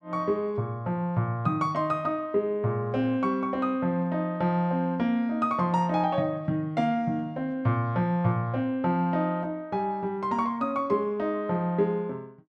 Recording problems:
none

